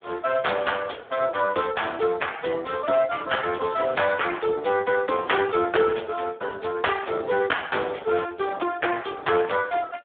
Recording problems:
telephone audio; 240 Hz to 3.6 kHz, Speex

